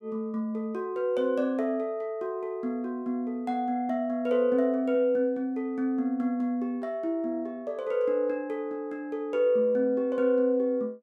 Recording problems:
none

